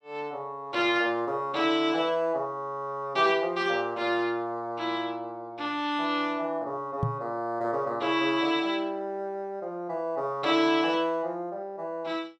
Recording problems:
knock on the microphone; at 7 s; peak +3 dB vs average level

